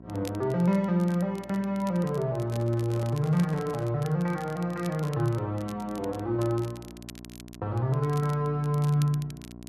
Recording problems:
electrical hum; 60 Hz, harmonics up to 1.1 kHz, SNR 19 dB
crackle; vinyl, SNR 22 dB
handling noise; from 2.5 to 4 s; peak -10 dB vs average level

